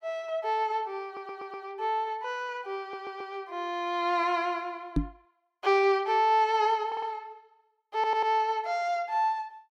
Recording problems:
stutter; 4 times, first at 1 s
microphone bump; at 5 s; peak +5 dB vs average level

